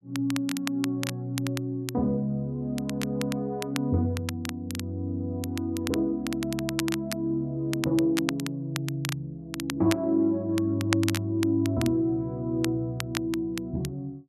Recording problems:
crackle; vinyl, SNR 9 dB

